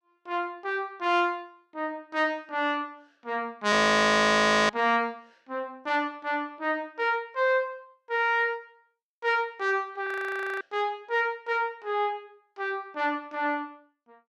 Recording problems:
frozen audio; at 3.5 s for 1 s and at 10 s for 0.5 s

